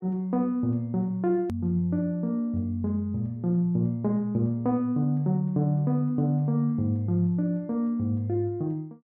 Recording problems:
edit click; at 1.5 s

